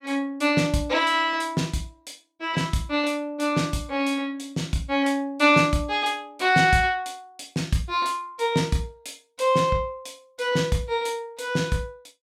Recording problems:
none

